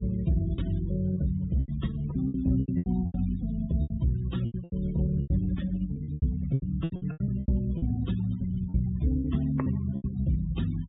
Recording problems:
treble cut off; nothing above 4 kHz
denoising artefacts; signal-to-artefact ratio 19 dB
packet loss; 15% of the sound replaced, filled with repeated pitch periods

